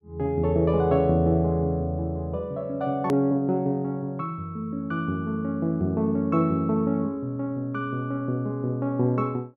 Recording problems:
edit click; at 3 s

